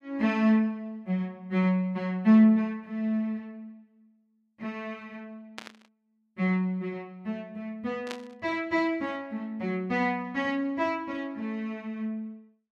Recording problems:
static burst; at 5.5 s and at 8 s; peak -5 dB vs average level

